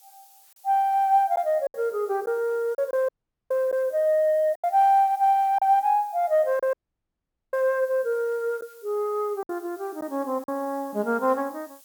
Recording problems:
hiss; SNR 27 dB
packet loss; 4% of the sound replaced, filled with silence
dropout; at 3 s and at 6.5 s for 1 s

